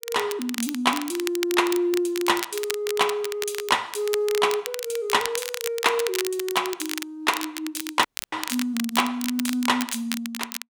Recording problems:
crackling; vinyl, SNR 7 dB
dropout; at 8 s

